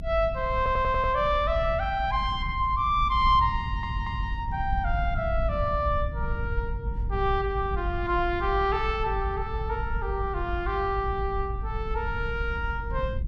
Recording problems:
rumble; below 80 Hz, SNR 5 dB
audio stuttering; at 0.5 s and at 3.5 s

